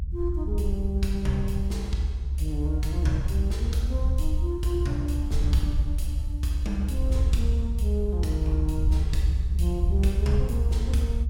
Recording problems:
low-frequency rumble; below 70 Hz, strongest tone 68 Hz, SNR -5 dB

